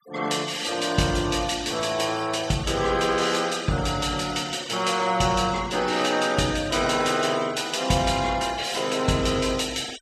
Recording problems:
denoising artefacts; signal-to-artefact ratio 17 dB

